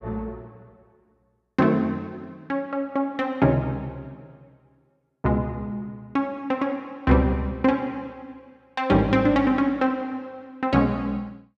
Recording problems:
none

